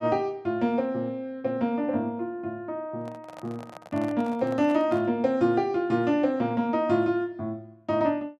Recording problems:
microphone handling noise; from 3 to 5 s; peak -11 dB vs average level

